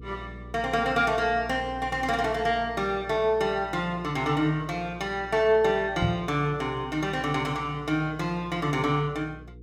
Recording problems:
hum; 60 Hz, harmonics up to 480 Hz, SNR 18 dB
knock on the microphone; at 6 s; peak +3 dB vs average level

